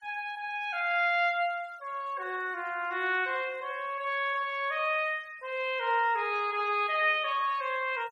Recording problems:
noise reduction artefacts; signal-to-artefact ratio 27 dB

